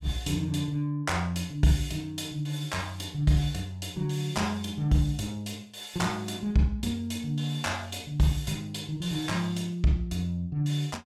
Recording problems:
none

